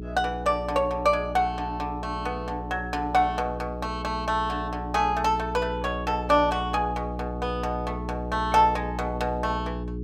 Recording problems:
mains hum; 60 Hz, harmonics up to 420 Hz, SNR 8 dB

